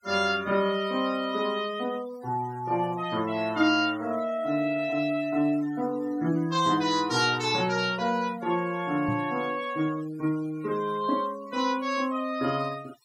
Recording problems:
denoising artefacts; signal-to-artefact ratio 21 dB
microphone thump; at 9 s; peak -2 dB vs average level

